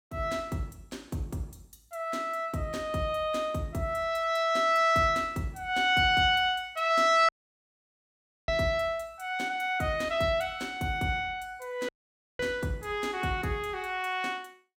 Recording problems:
audio cutting out; at 7.5 s for 1 s and at 12 s for 0.5 s

